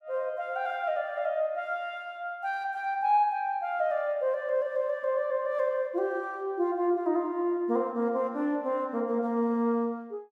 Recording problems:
none

